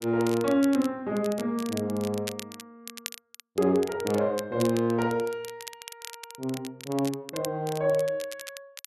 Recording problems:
crackle; vinyl, SNR 14 dB

